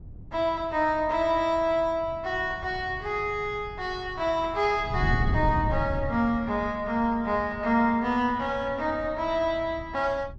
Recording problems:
low-pass filter; nothing above 8 kHz
wind on the microphone; below 140 Hz, SNR 10 dB

